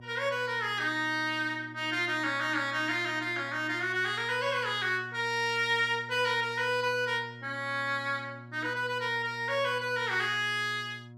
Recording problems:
hum; 60 Hz, harmonics up to 960 Hz, SNR 18 dB

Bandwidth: 14.5 kHz